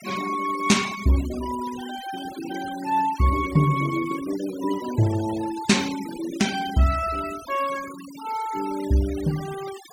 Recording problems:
noise reduction artefacts; signal-to-artefact ratio 14 dB

